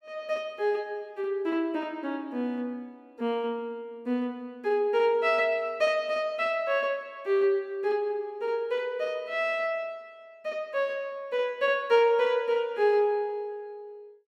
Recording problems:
none

